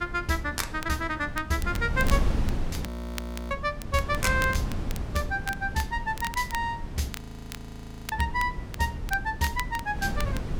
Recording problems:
wind noise; below 170 Hz, SNR 5 dB
crackle; vinyl, SNR 13 dB
frozen audio; at 3 s for 0.5 s and at 7 s for 1 s

